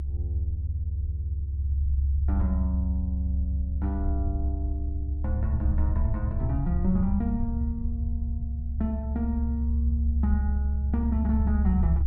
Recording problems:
low-frequency rumble; below 72 Hz, strongest tone 70 Hz, SNR -5 dB

